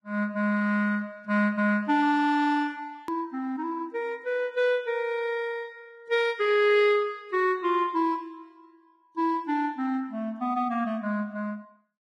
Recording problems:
lossy codec; Vorbis, log-spectral distance 2 dB
hard cut with a click; at 3 s

